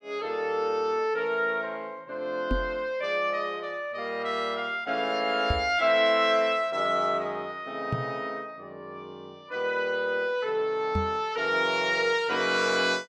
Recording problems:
knock on the microphone; 4 times, first at 2.5 s; peak +2 dB vs average level

